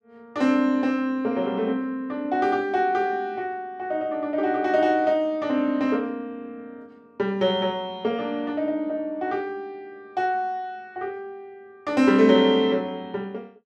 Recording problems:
none

